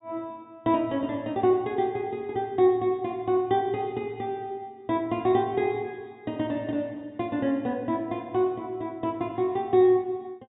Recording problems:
treble cut off; nothing above 4 kHz

